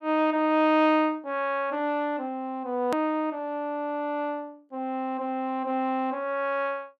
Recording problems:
hard cut with a click; at 3 s

